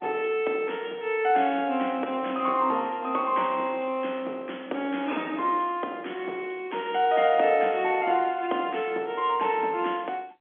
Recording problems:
phone line; 220 Hz to 3.4 kHz, G.711

